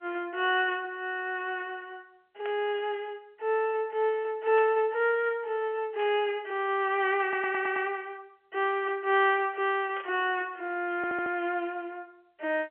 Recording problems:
telephone audio; 320 Hz to 3.3 kHz, G.711
static burst; 4 times, first at 2.5 s; peak -9 dB vs average level
audio stuttering; at 7 s and at 11 s

